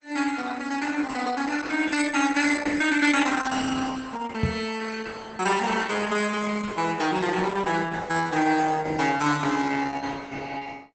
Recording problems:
codec artefacts; Opus, log-spectral distance 6 dB, nothing above 8.2 kHz
microphone thump; at 4.5 s; peak +6 dB vs average level

